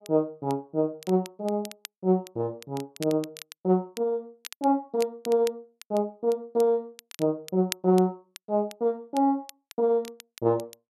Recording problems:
crackling; vinyl, SNR 18 dB

